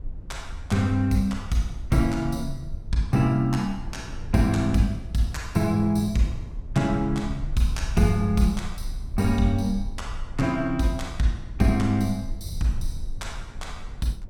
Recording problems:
rumble; below 58 Hz, SNR 13 dB
wind noise; below 240 Hz, SNR 22 dB

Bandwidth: 17.5 kHz